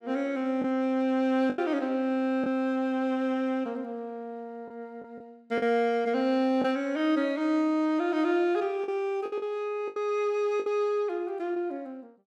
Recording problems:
lost packets; 5% of the sound replaced, filled with the last packet

